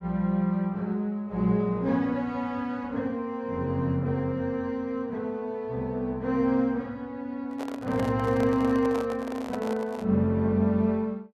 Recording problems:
microphone handling noise; from 7.5 to 10 s; peak -4 dB vs average level

